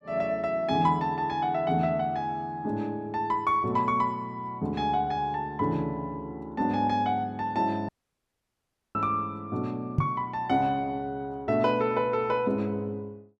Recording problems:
dropout; at 8 s for 1 s
microphone bump; at 10 s; peak +7 dB vs average level

